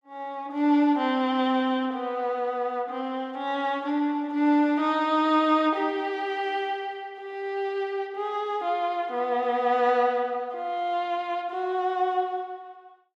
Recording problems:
none

